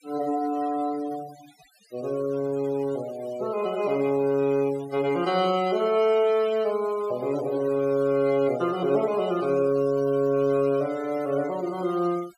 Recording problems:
denoising artefacts; signal-to-artefact ratio 20 dB

